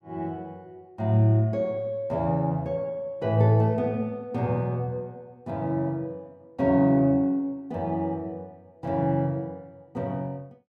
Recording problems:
none

